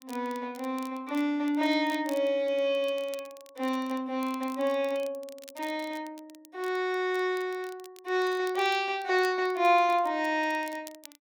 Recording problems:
crackling; vinyl, SNR 23 dB

